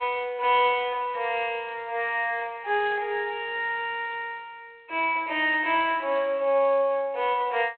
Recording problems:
phone line; 340 Hz to 3.3 kHz, G.726

